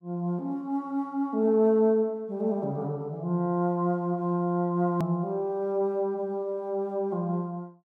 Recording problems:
hard cut with a click; at 5 s

